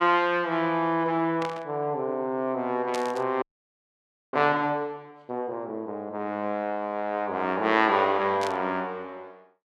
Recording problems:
burst of static; at 1.5 s, at 3 s and at 8.5 s; peak -5 dB vs average level
frozen audio; at 3.5 s for 1 s

